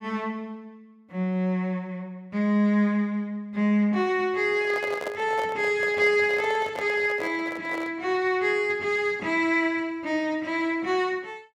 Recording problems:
handling noise; from 4.5 to 8 s; peak -4 dB vs average level

